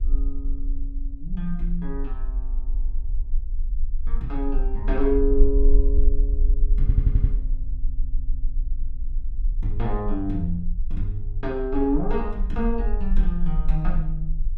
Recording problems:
rumble; below 40 Hz, strongest tone 20 Hz, SNR -1 dB
stutter; at 7 s and at 7.5 s

